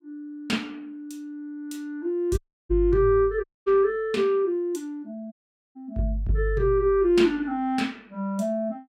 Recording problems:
dropout; at 2.5 s, at 3.5 s and at 5.5 s

